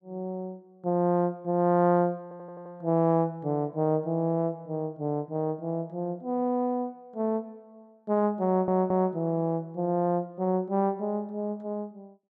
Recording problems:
stutter; at 2 s and at 8.5 s

